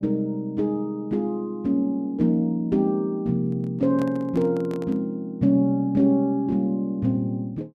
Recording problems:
microphone handling noise; from 3.5 to 5 s; peak -8 dB vs average level

